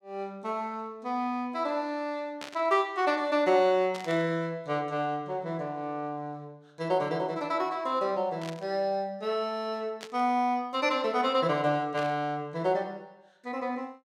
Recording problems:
burst of static; 5 times, first at 2.5 s; peak -7 dB vs average level

